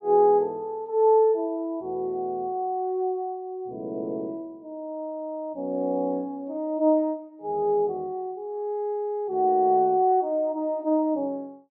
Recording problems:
none

